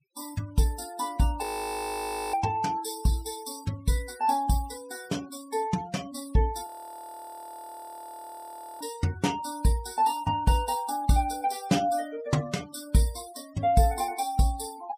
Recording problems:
denoising artefacts; signal-to-artefact ratio 18 dB
audio freezing; at 1.5 s for 1 s and at 6.5 s for 2 s

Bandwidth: 14.5 kHz